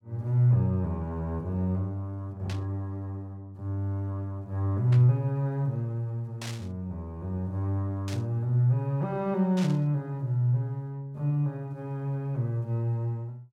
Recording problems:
burst of static; 5 times, first at 2.5 s; peak -7 dB vs average level

